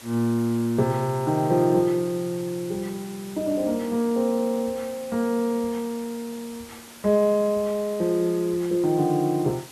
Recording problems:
background hiss; slope -2 dB per octave, SNR 19 dB

